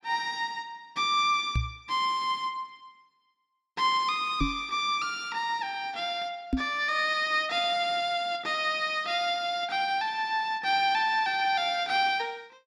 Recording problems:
knock on the microphone; at 1.5 s, at 4.5 s and at 6.5 s; peak +4 dB vs average level

